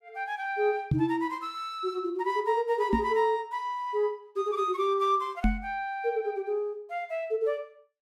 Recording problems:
knock on the microphone; at 1 s, at 3 s and at 5.5 s; peak +7 dB vs average level

